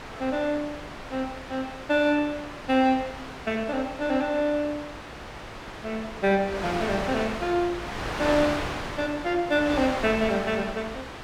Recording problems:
wind on the microphone; below 2.1 kHz, SNR 8 dB

